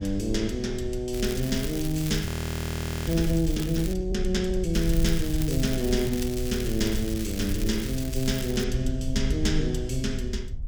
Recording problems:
rumble; below 68 Hz, SNR 9 dB
wind on the microphone; below 76 Hz, SNR 9 dB
crackling; from 1 to 4 s and from 4.5 to 8.5 s; loose cable, SNR 10 dB
frozen audio; at 2.5 s for 1 s

